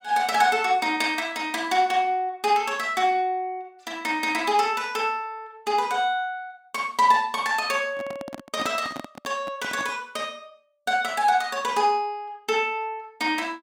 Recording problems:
microphone handling noise; from 8 to 10 s; peak -5 dB vs average level

